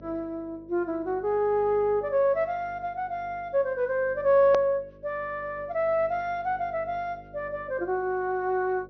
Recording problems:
treble missing; nothing above 6.2 kHz
hum; 50 Hz, harmonics up to 600 Hz, SNR 23 dB
edit click; at 4.5 s

